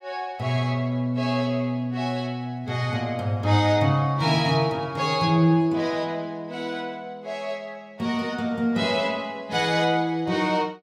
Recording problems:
none

